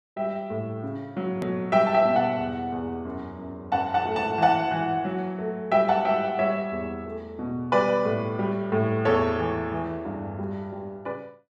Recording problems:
edit click; at 1.5 s

